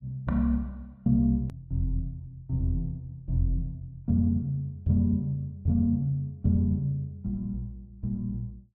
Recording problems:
hard cut with a click; at 1.5 s

